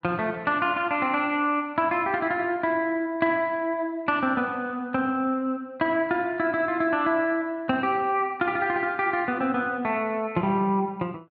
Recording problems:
none

